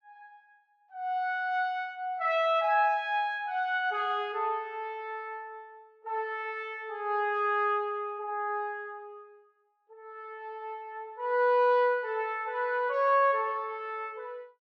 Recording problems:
none

